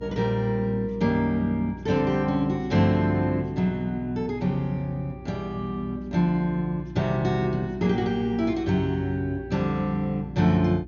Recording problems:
treble missing; nothing above 6.8 kHz
mains hum; 60 Hz, harmonics up to 360 Hz, SNR 16 dB

